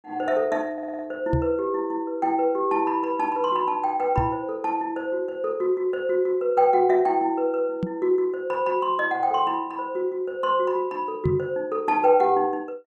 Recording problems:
stutter; at 0.5 s
microphone thump; 4 times, first at 1.5 s; peak +3 dB vs average level

